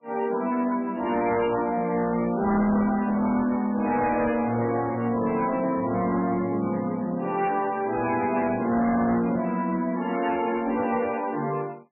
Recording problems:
codec artefacts; MP3, log-spectral distance 4 dB, nothing above 2.4 kHz
distorted audio; hard clipping, uneven, signal-to-distortion ratio 10 dB

